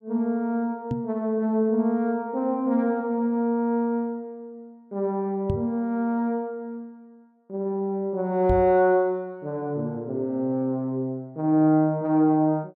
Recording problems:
microphone bump; at 1 s, at 5.5 s and at 8.5 s; peak +1 dB vs average level

